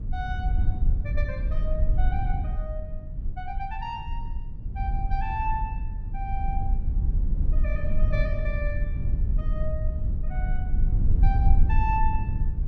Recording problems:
low-frequency rumble; below 64 Hz, SNR -7 dB

